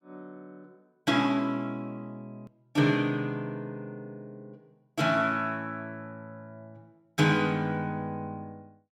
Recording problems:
edit click; at 2.5 s

